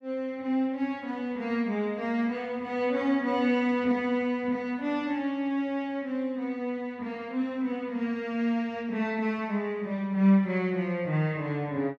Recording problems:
none

